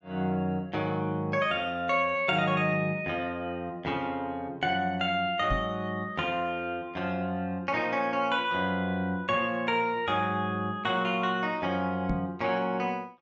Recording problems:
treble missing; nothing above 8 kHz
microphone thump; at 5.5 s and at 12 s; peak +1 dB vs average level

